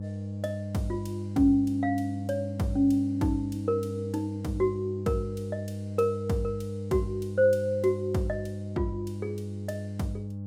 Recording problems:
hum; 50 Hz, harmonics up to 600 Hz, SNR 7 dB

